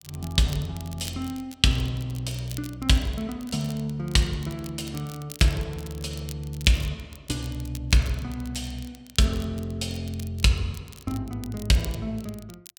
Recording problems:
crackling; vinyl, SNR 18 dB

